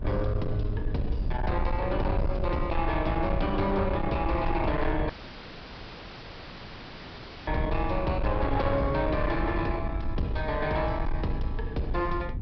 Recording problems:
treble missing; nothing above 5.5 kHz
distortion; soft clipping, signal-to-distortion ratio 10 dB
hum; 50 Hz, harmonics up to 300 Hz, SNR 18 dB
rumble; below 88 Hz, SNR 5 dB
dropout; at 5 s for 2.5 s

